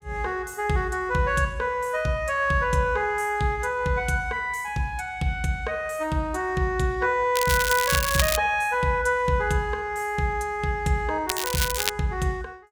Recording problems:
crackle; from 7.5 to 8.5 s and at 11 s; loose cable, SNR 2 dB

